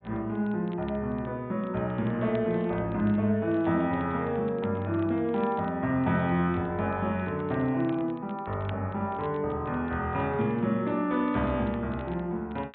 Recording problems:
treble cut off; nothing above 4 kHz
crackle; vinyl, SNR 28 dB

